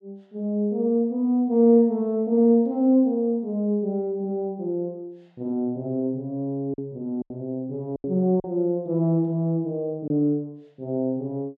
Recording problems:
packet loss; 2% of the sound replaced, filled with silence

